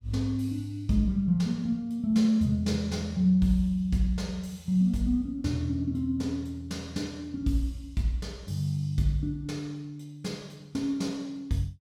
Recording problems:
none

